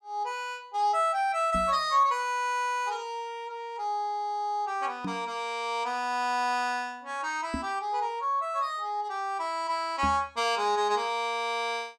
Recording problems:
microphone thump; 4 times, first at 1.5 s; peak -1 dB vs average level

